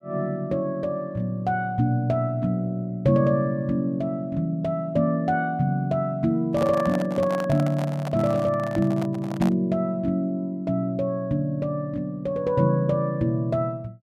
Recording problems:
handling noise; from 6.5 to 9.5 s; peak -3 dB vs average level

